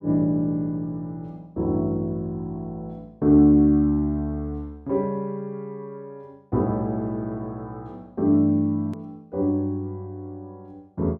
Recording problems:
click at an edit; at 9 s

